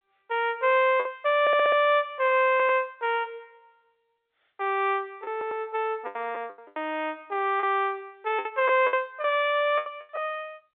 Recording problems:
phone line; 260 Hz to 3.6 kHz, G.711
packet loss; 8% of the sound replaced, filled with the last packet
stutter; at 1.5 s, at 2.5 s and at 5.5 s

